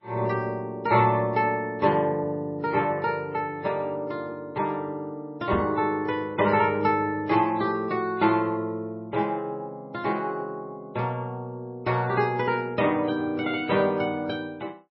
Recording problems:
lossy codec; MP3, log-spectral distance 2 dB, nothing above 5.3 kHz
knock on the microphone; at 5.5 s; peak -1 dB vs average level

